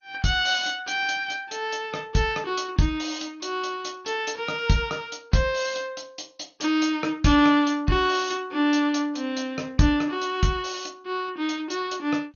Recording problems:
codec artefacts; MP2, log-spectral distance 4 dB, nothing above 6.7 kHz

